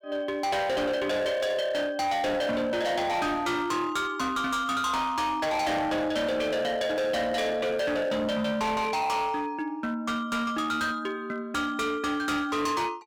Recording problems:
distorted audio; hard clipping, signal-to-distortion ratio 8 dB

